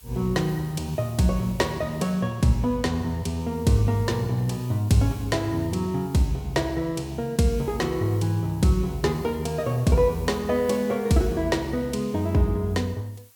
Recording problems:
background hiss; slope +1 dB per octave, SNR 25 dB

